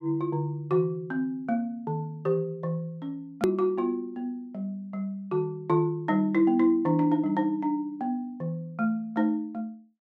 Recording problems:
click at an edit; at 3.5 s

